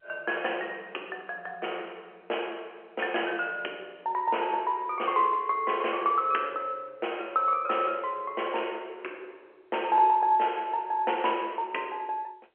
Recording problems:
phone line; 300 Hz to 3.2 kHz, G.711

